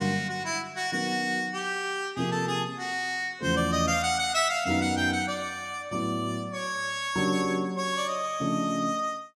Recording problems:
none

